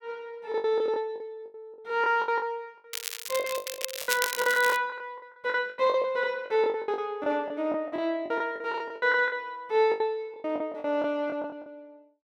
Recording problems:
lost packets; 18% of the sound replaced, filled with the last packet
crackle; at 3 s and from 3.5 to 5 s; loose cable, SNR 5 dB

